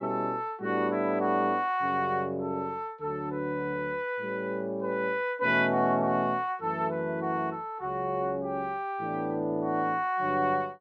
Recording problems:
none

